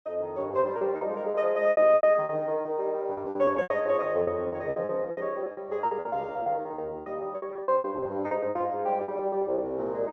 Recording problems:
packet loss; 19% of the sound replaced, filled with repeated pitch periods

